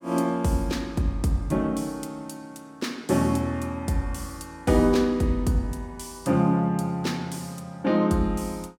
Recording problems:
none

